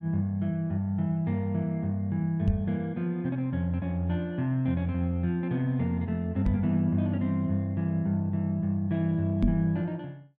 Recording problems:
microphone thump; at 2.5 s, at 6.5 s and at 9.5 s; peak +6 dB vs average level

